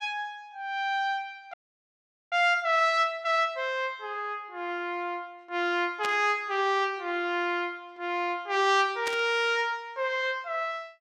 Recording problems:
audio freezing; at 1.5 s for 1 s
static burst; at 6 s and at 9 s; peak -2 dB vs average level

